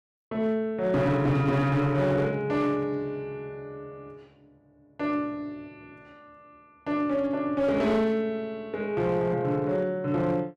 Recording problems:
distortion; hard clipping, uneven, signal-to-distortion ratio 12 dB

